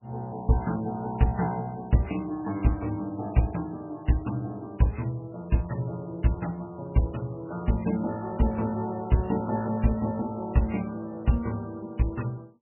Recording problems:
lossy codec; MP3, log-spectral distance 2 dB, nothing above 2.9 kHz

